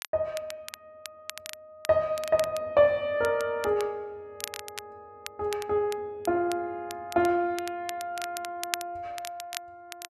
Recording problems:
crackle; vinyl, SNR 13 dB

